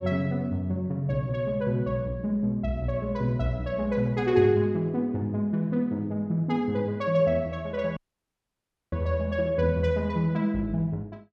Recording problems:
audio cutting out; at 8 s for 1 s

